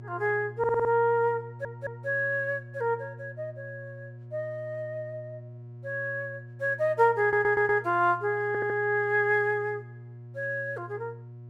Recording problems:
hum; 60 Hz, harmonics up to 600 Hz, SNR 17 dB
stutter; 4 times, first at 0.5 s

